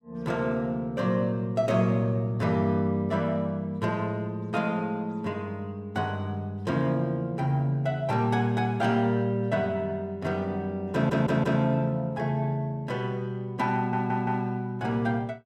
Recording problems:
audio stuttering; at 11 s and at 14 s

